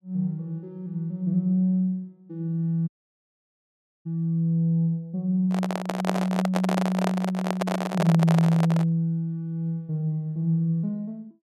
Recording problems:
audio cutting out; at 3 s for 1 s
handling noise; from 5.5 to 9 s; peak +3 dB vs average level

